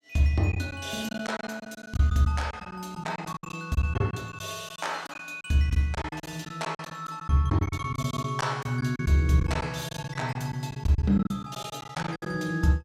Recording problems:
packet loss; 13% of the sound replaced, filled with silence

